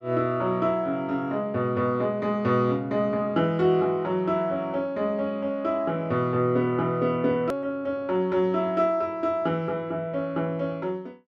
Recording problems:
click at an edit; at 7.5 s

